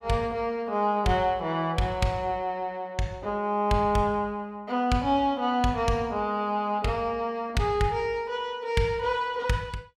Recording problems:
none

